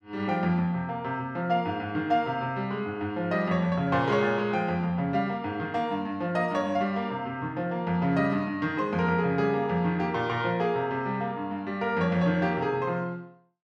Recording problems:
none

